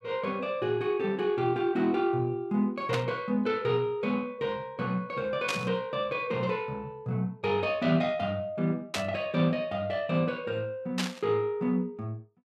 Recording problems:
static burst; 4 times, first at 3 s; peak +3 dB vs average level

